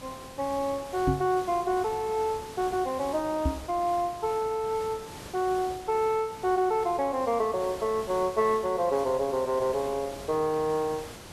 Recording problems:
background hiss; slope -4 dB per octave, SNR 15 dB
knock on the microphone; at 1 s and at 3.5 s; peak +5 dB vs average level

